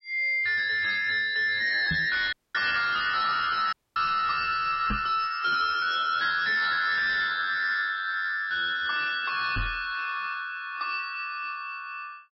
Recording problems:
lossy compression; MP3, log-spectral distance 4 dB, nothing above 4.6 kHz
distorted audio; soft clipping, signal-to-distortion ratio 11 dB
knock on the microphone; at 2 s, at 5 s and at 9.5 s; peak +1 dB vs average level
dropout; at 2.5 s and at 3.5 s

